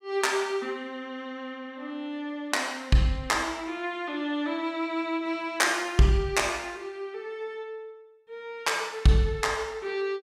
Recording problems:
none

